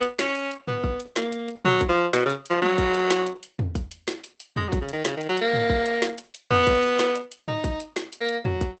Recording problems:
codec artefacts; Opus, log-spectral distance 5 dB, nothing above 8 kHz

